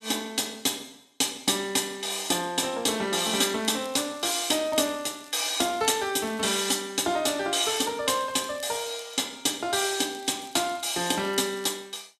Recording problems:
crackling; from 3.5 to 6.5 s, from 8 to 9.5 s and from 10 to 12 s; loose cable, SNR 24 dB

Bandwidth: 13 kHz